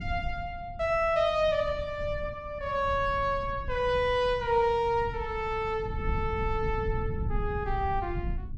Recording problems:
rumble; below 110 Hz, SNR 9 dB

